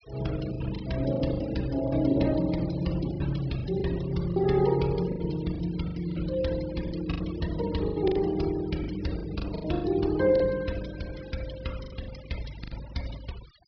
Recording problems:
low-pass filter; nothing above 5.5 kHz
noise reduction artefacts; signal-to-artefact ratio 18 dB
lost packets; 11% of the sound replaced, filled with the last packet

